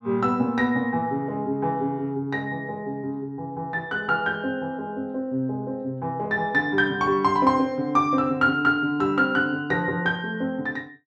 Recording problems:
none

